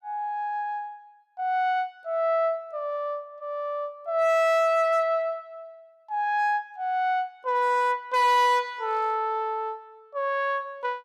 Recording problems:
distortion; hard clipping, uneven, signal-to-distortion ratio 10 dB

